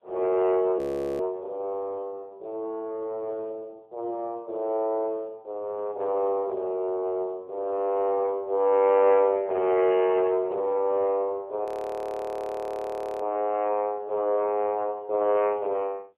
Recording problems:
phone line; 320 Hz to 3 kHz, AMR-NB
frozen audio; at 1 s and at 12 s for 1.5 s

